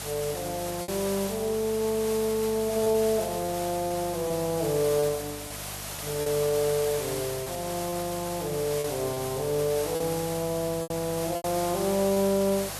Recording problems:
hum; 50 Hz, harmonics up to 450 Hz, SNR 17 dB
background hiss; SNR 8 dB
lost packets; 5% of the sound replaced, filled with repeated pitch periods

